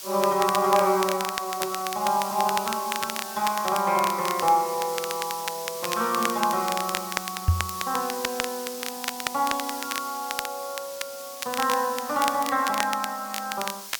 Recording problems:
hiss; slope +2 dB per octave, SNR 10 dB
crackle; vinyl, SNR 7 dB
knock on the microphone; at 7.5 s; peak +9 dB vs average level

